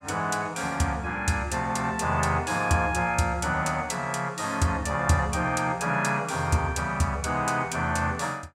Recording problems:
none

